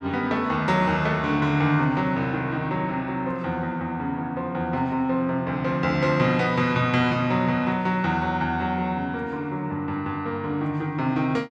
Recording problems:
none

